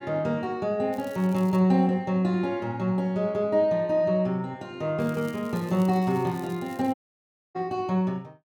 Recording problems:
crackle; at 1 s and from 5 to 7.5 s; loose cable, SNR 25 dB
dropout; at 7 s for 0.5 s

